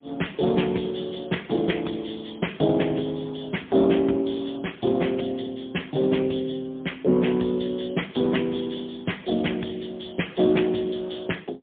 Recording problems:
phone line; 150 Hz to 3.5 kHz, AMR-NB, then MP3

